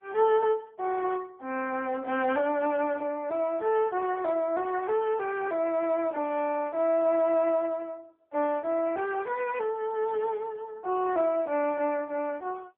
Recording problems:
telephone audio; 280 Hz to 3 kHz, AMR-NB

